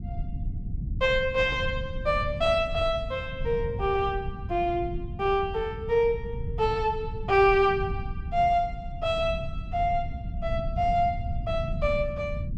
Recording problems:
low-frequency rumble; below 120 Hz, SNR 9 dB

